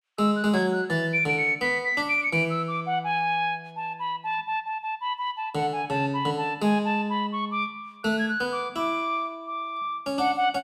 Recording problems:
none

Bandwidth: 15 kHz